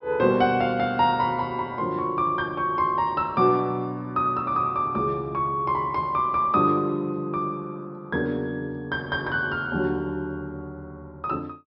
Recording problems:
treble cut off; nothing above 5.6 kHz

